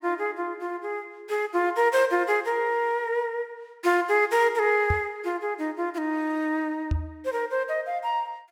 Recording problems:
knock on the microphone; at 5 s and at 7 s; peak +3 dB vs average level

